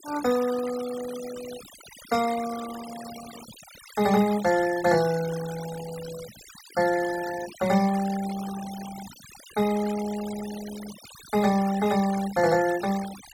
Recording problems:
denoising artefacts; signal-to-artefact ratio 14 dB

